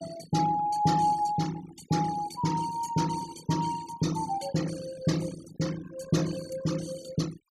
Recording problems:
noise reduction artefacts; signal-to-artefact ratio 14 dB

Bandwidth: 15.5 kHz